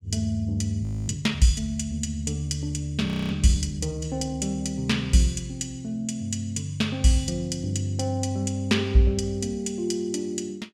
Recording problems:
audio freezing; at 1 s and at 3 s

